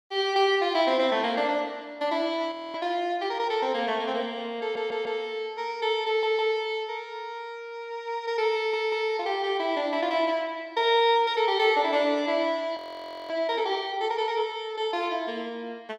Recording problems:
audio freezing; at 2.5 s and at 13 s for 0.5 s
audio stuttering; at 4.5 s, at 6 s and at 8.5 s

